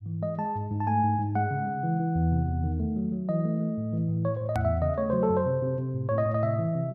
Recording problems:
click at an edit; at 4.5 s

